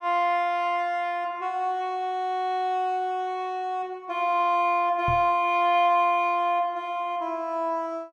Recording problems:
knock on the microphone; at 5 s; peak -3 dB vs average level

